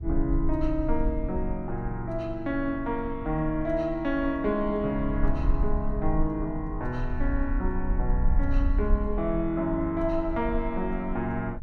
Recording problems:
rumble; below 48 Hz, strongest tone 18 Hz, SNR 4 dB

